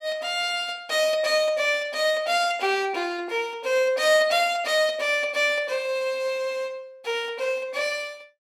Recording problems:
none

